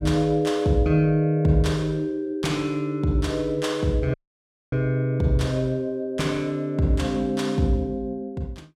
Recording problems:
dropout; at 4 s for 0.5 s

